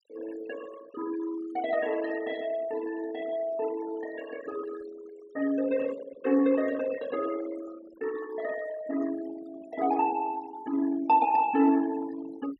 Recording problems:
noise reduction artefacts; signal-to-artefact ratio 17 dB

